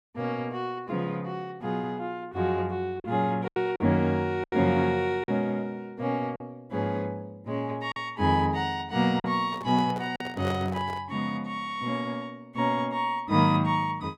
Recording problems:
packet loss; 3% of the sound replaced, filled with silence
microphone handling noise; from 9.5 to 11 s; peak -4 dB vs average level

